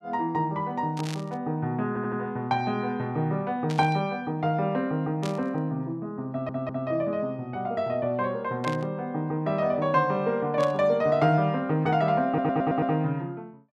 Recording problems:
burst of static; 5 times, first at 1 s; peak -5 dB vs average level
stutter; at 2 s, at 6.5 s and at 12 s

